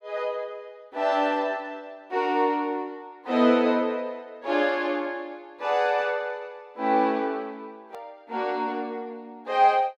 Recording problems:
edit click; at 8 s

